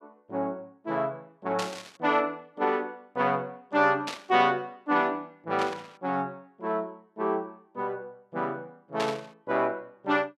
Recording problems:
burst of static; 4 times, first at 1.5 s; peak 0 dB vs average level

